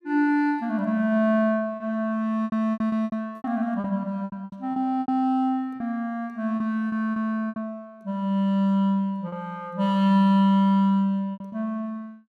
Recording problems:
lost packets; 9% of the sound replaced, filled with repeated pitch periods

